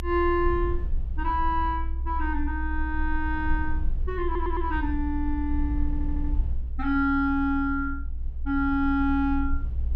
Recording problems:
rumble; below 62 Hz, strongest tone 22 Hz, SNR 4 dB
stutter; at 4.5 s and at 6 s

